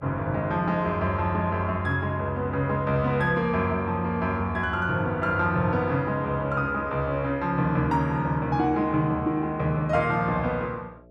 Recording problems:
hum; 60 Hz, harmonics up to 660 Hz, SNR 26 dB

